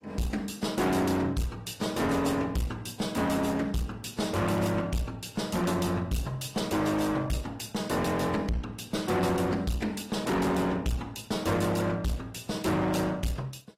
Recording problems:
codec artefacts; AAC, log-spectral distance 4 dB, nothing above 14.7 kHz
distortion; hard clipping, uneven, signal-to-distortion ratio 6 dB

